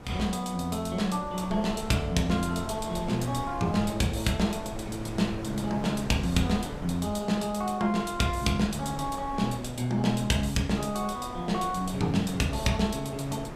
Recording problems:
wind on the microphone; below 670 Hz, SNR 13 dB

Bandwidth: 15.5 kHz